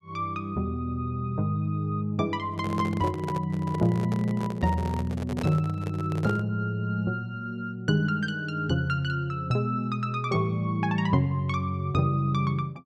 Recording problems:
microphone handling noise; from 2.5 to 6.5 s; peak -2 dB vs average level

